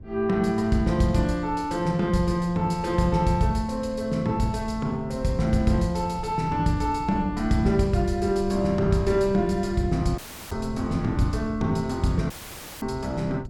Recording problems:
wind on the microphone; below 140 Hz, SNR 14 dB
dropout; at 10 s and at 12 s for 0.5 s; filled with static

